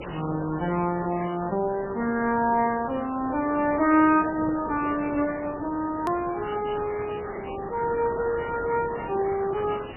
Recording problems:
lossy compression; MP3, then MP3, log-spectral distance 18 dB, nothing above 13.1 kHz
background hiss; SNR 12 dB
edit click; at 6 s

